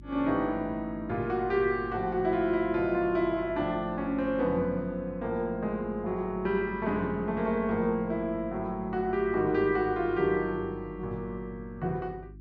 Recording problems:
treble missing; nothing above 8 kHz
hum; 50 Hz, harmonics up to 350 Hz, SNR 18 dB

